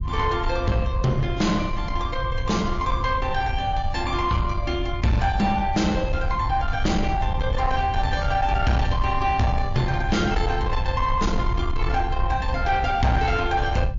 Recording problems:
lossy codec; MP3, log-spectral distance 2 dB, nothing above 6.5 kHz
distortion; soft clipping, signal-to-distortion ratio 10 dB
rumble; below 88 Hz, SNR 5 dB

